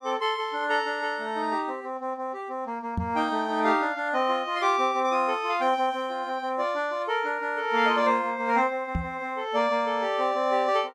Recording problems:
microphone thump; at 3 s and at 9 s; peak +1 dB vs average level

